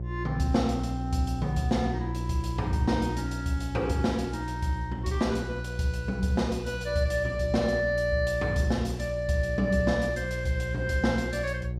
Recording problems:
hum; 60 Hz, harmonics up to 540 Hz, SNR 6 dB

